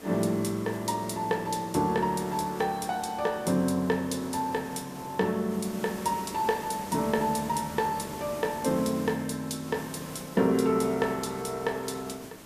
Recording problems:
background hiss; slope -5 dB per octave, SNR 14 dB

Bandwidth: 14.5 kHz